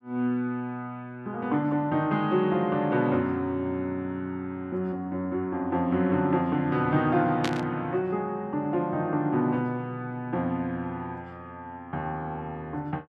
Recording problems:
static burst; at 7.5 s; peak +1 dB vs average level

